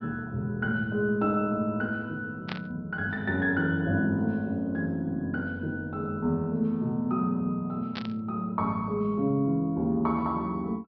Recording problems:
treble cut off; nothing above 5.5 kHz
static burst; at 2.5 s and at 8 s; peak -3 dB vs average level

